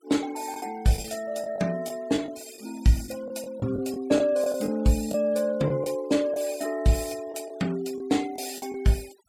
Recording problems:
denoising artefacts; signal-to-artefact ratio 21 dB
lost packets; 7% of the sound replaced, filled with the last packet

